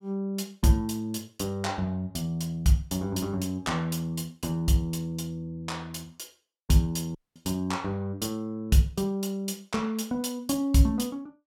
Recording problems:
audio cutting out; at 7 s

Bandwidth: 17 kHz